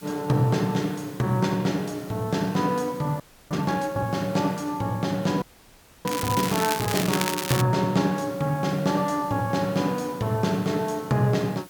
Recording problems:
hiss; slope -1 dB per octave, SNR 23 dB
frozen audio; at 3 s and at 5.5 s for 0.5 s
crackling; from 6 to 7.5 s; loose cable, SNR 4 dB

